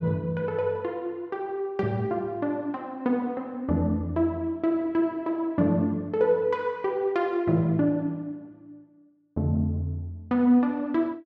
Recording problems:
none

